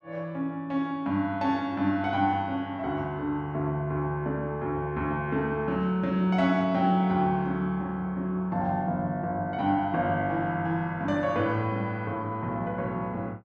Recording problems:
none

